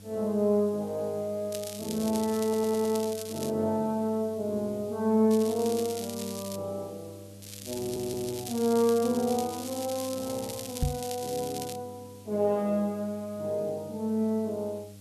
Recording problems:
hum; 50 Hz, harmonics up to 800 Hz, SNR 20 dB
background hiss; SNR 24 dB
crackling; from 1.5 to 3.5 s, from 5.5 to 6.5 s and from 7.5 to 12 s; loose cable, SNR 11 dB
audio stuttering; at 2.5 s and at 8 s
microphone bump; at 11 s; peak +5 dB vs average level

